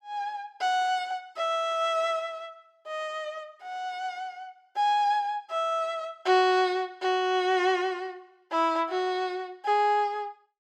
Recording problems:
none

